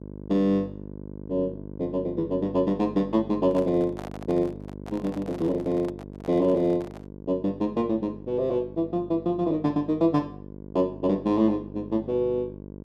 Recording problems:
mains hum; 50 Hz, harmonics up to 1 kHz, SNR 14 dB
handling noise; from 3.5 to 7 s; peak -9 dB vs average level

